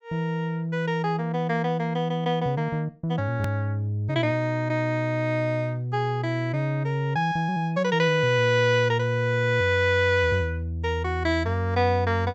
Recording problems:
low-pass filter; nothing above 8 kHz
edit click; at 3.5 s

